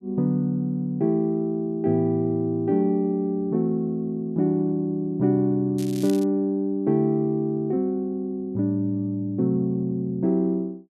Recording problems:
crackling; at 6 s; loose cable, SNR 18 dB

